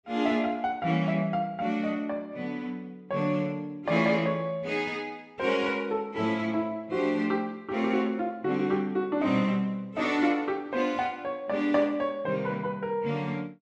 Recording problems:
none

